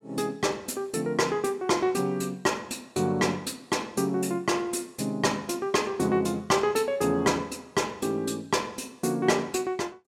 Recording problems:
none

